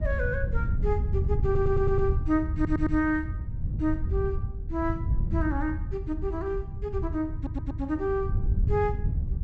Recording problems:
treble missing; nothing above 7.9 kHz
wind noise; below 100 Hz, SNR 1 dB
stutter; at 1.5 s, at 2.5 s and at 7.5 s

